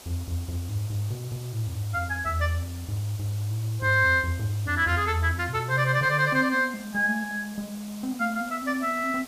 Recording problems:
background hiss; SNR 18 dB

